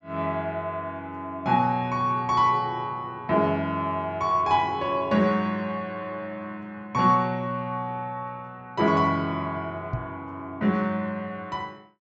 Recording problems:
treble cut off; nothing above 7.7 kHz
microphone thump; at 10 s; peak +1 dB vs average level

